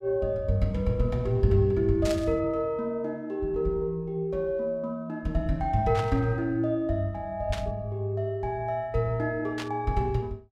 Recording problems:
static burst; 4 times, first at 2 s; peak -4 dB vs average level

